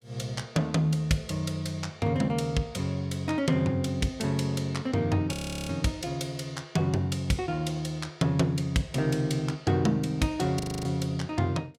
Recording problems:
frozen audio; at 5.5 s and at 11 s

